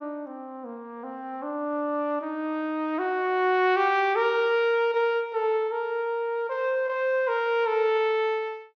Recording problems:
treble cut off; nothing above 6.5 kHz

